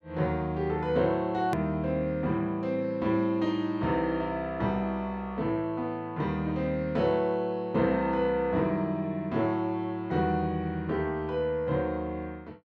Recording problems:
hard cut with a click; at 1.5 s

